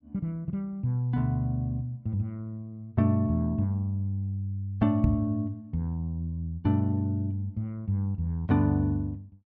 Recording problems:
knock on the microphone; at 5 s; peak +7 dB vs average level

